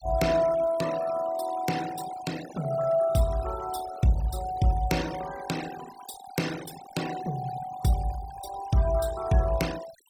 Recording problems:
noise reduction artefacts; signal-to-artefact ratio 14 dB

